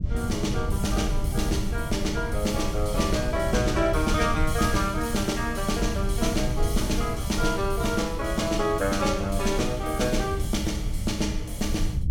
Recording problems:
rumble; below 100 Hz, SNR 4 dB

